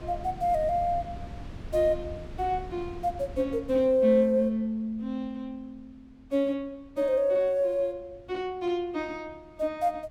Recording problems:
wind on the microphone; below 190 Hz, SNR 16 dB

